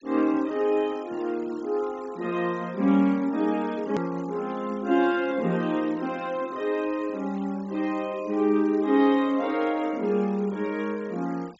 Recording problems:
treble cut off; nothing above 8 kHz
noise reduction artefacts; signal-to-artefact ratio 24 dB
hard cut with a click; at 4 s

